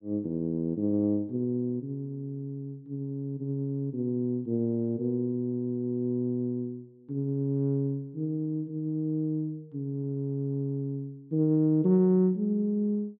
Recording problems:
none

